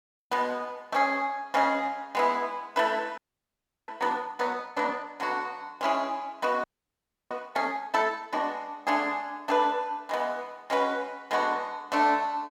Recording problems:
frozen audio; at 3 s for 0.5 s and at 6.5 s for 0.5 s

